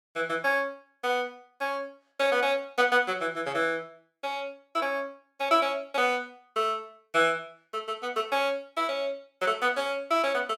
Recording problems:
none

